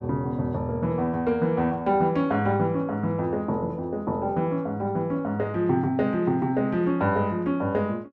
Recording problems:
none

